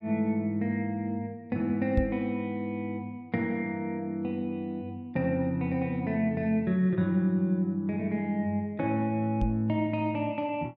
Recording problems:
microphone bump; at 2 s and at 9.5 s; peak +5 dB vs average level

